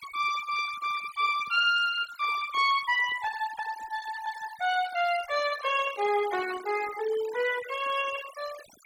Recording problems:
noise reduction artefacts; signal-to-artefact ratio 14 dB

